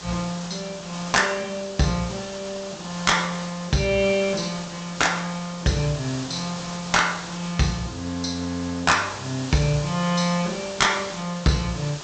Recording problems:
low-pass filter; nothing above 8 kHz
distortion; hard clipping, uneven, signal-to-distortion ratio 10 dB
hiss; SNR 12 dB

